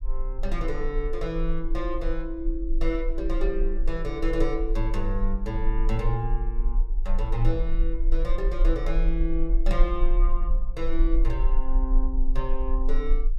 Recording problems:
rumble; below 36 Hz, strongest tone 24 Hz, SNR -3 dB

